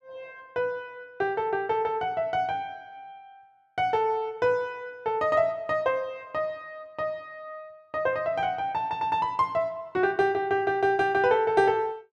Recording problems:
none

